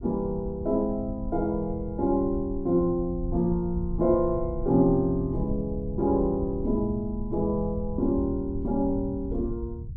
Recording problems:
rumble; below 96 Hz, SNR 10 dB

